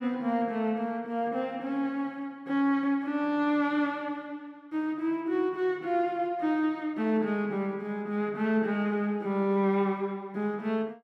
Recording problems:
none

